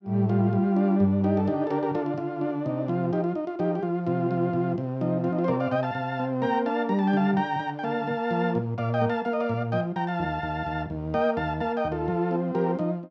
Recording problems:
none

